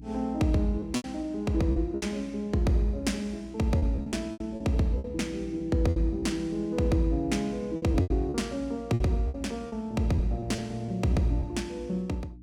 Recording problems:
hum; 60 Hz, harmonics up to 300 Hz, SNR 19 dB
packet loss; 9% of the sound replaced, filled with repeated pitch periods

